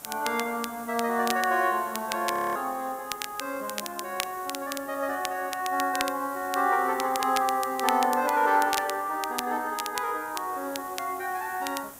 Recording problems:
hiss; SNR 17 dB
crackle; vinyl, SNR 9 dB
frozen audio; at 2.5 s

